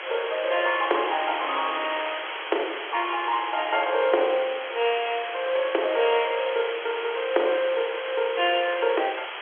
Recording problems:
telephone audio; 300 Hz to 3.4 kHz, G.711
background hiss; SNR 7 dB

